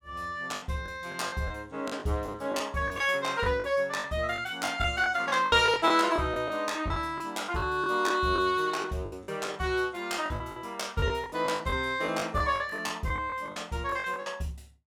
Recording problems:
packet loss; 12% of the sound replaced, filled with the last packet

